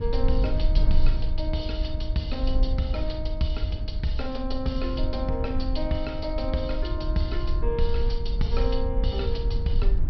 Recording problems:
treble cut off; nothing above 5.5 kHz
low-frequency rumble; below 52 Hz, strongest tone 18 Hz, SNR -2 dB

